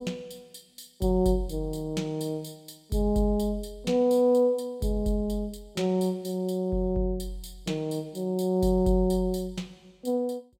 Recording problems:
none

